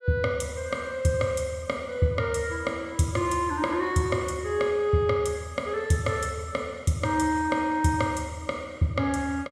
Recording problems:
none

